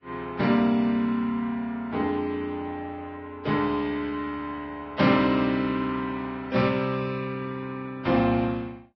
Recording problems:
lossy compression; Vorbis, log-spectral distance 2 dB, nothing above 5 kHz

